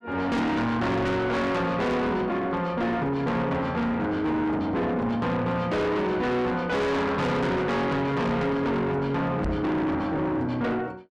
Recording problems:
distortion; soft clipping, signal-to-distortion ratio 6 dB
microphone bump; at 9.5 s; peak 0 dB vs average level

